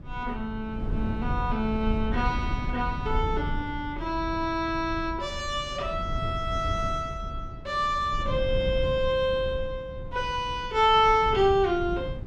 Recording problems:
rumble; below 120 Hz, SNR 8 dB

